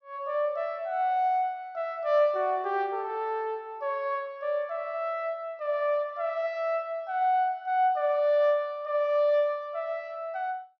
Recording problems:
low-pass filter; nothing above 6.1 kHz

